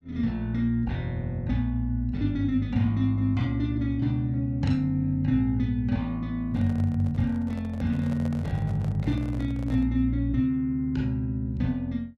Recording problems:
handling noise; from 6.5 to 10 s; peak -10 dB vs average level

